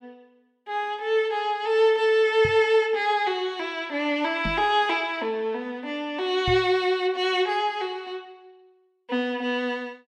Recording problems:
microphone thump; at 2.5 s, at 4.5 s and at 6.5 s; peak -3 dB vs average level

